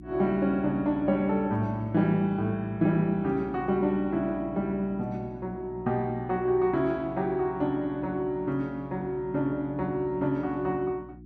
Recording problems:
hum; 60 Hz, harmonics up to 360 Hz, SNR 19 dB

